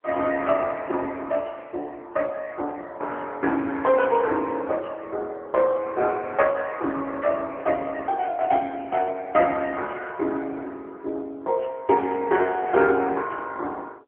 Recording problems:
phone line; 240 Hz to 3.4 kHz, AMR-NB

